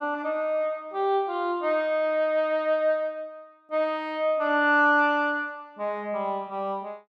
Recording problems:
none

